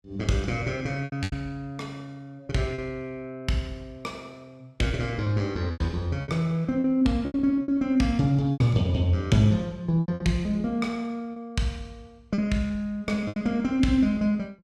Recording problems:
packet loss; 7% of the sound replaced, filled with repeated pitch periods

